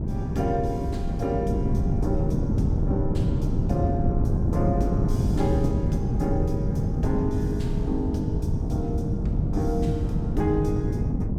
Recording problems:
wind on the microphone; below 200 Hz, SNR -4 dB

